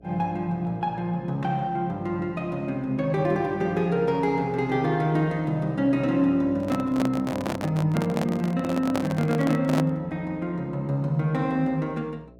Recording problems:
electrical hum; 60 Hz, harmonics up to 660 Hz, SNR 25 dB
microphone handling noise; from 6.5 to 10 s; peak +1 dB vs average level

